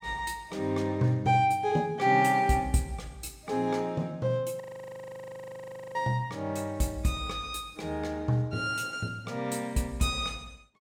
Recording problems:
audio freezing; at 4.5 s for 1.5 s

